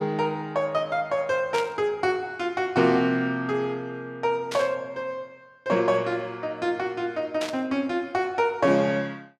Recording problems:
burst of static; at 1.5 s, at 4.5 s and at 7.5 s; peak -4 dB vs average level

